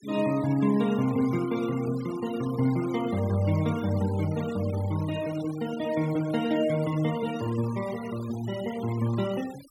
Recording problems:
noise reduction artefacts; signal-to-artefact ratio 17 dB

